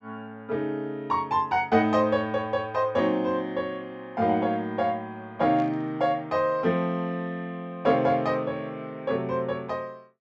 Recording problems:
treble cut off; nothing above 8 kHz
burst of static; at 5.5 s; peak -17 dB vs average level

